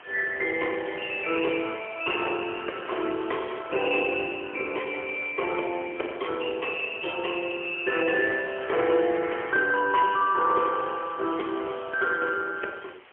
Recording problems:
telephone audio; 300 Hz to 3.1 kHz, AMR-NB, then MP3
hiss; SNR 21 dB

